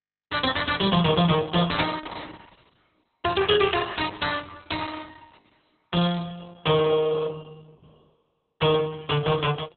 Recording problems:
codec artefacts; Opus, log-spectral distance 7 dB, nothing above 3.9 kHz

